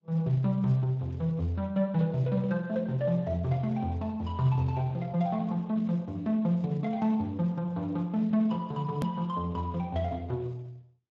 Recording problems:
lossy codec; Opus, then Speex, log-spectral distance 2 dB, nothing above 13.1 kHz
edit click; at 9 s

